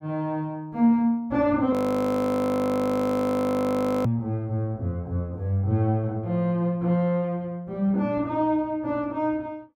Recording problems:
frozen audio; at 1.5 s for 2.5 s

